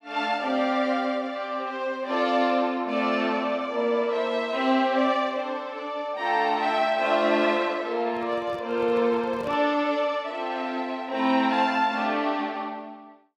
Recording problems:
microphone handling noise; from 8 to 9.5 s; peak -12 dB vs average level

